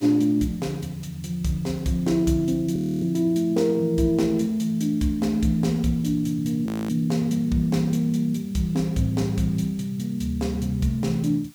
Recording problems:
hiss; slope +2 dB per octave, SNR 28 dB
frozen audio; at 3 s and at 6.5 s

